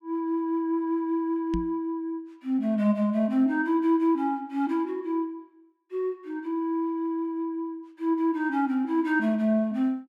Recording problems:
microphone bump; at 1.5 s; peak -1 dB vs average level

